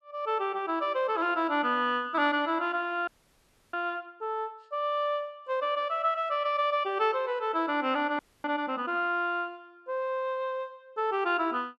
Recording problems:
frozen audio; at 3 s for 0.5 s and at 8 s

